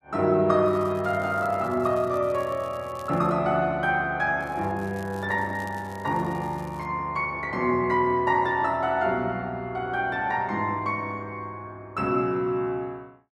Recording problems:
crackle; from 0.5 to 3.5 s and from 4.5 to 7 s; loose cable, SNR 27 dB

